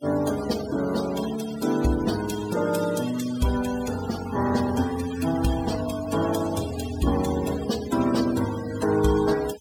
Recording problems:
denoising artefacts; signal-to-artefact ratio 12 dB

